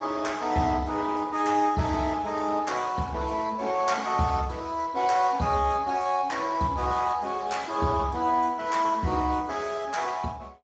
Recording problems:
lossy compression; Speex, log-spectral distance 4 dB, nothing above 7.3 kHz

